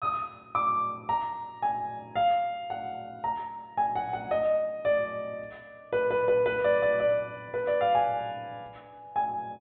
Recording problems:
low-pass filter; nothing above 4 kHz

